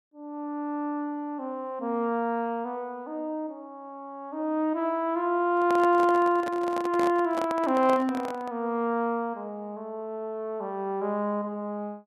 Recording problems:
microphone handling noise; from 5.5 to 8.5 s; peak -3 dB vs average level

